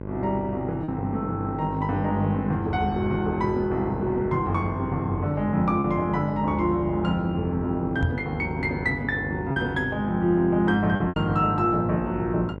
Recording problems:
hum; 50 Hz, harmonics up to 1.5 kHz, SNR 10 dB
lost packets; 1.9% of the sound replaced, filled with repeated pitch periods
knock on the microphone; at 8 s; peak +4 dB vs average level

